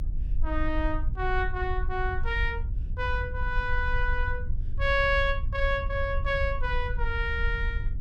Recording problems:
low-frequency rumble; below 60 Hz, strongest tone 20 Hz, SNR 3 dB

